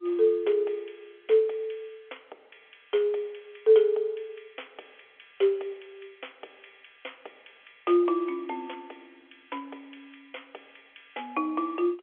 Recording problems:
phone line; 370 Hz to 3.4 kHz, G.711

